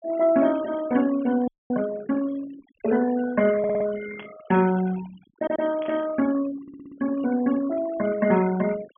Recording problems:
low-pass filter; nothing above 3.4 kHz
denoising artefacts; signal-to-artefact ratio 17 dB
audio freezing; at 1.5 s
stutter; at 3.5 s, at 5.5 s and at 6.5 s
burst of static; at 4 s and at 6 s; peak -13 dB vs average level

